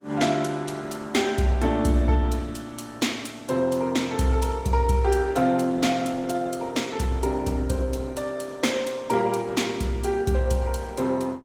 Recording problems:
lossy codec; Opus, log-spectral distance 3 dB, nothing above 19 kHz

